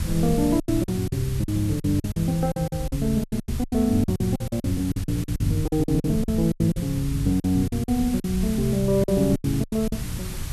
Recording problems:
background hiss; slope 0 dB per octave, SNR 15 dB
rumble; below 120 Hz, SNR 11 dB
lost packets; 17% of the sound replaced, filled with silence

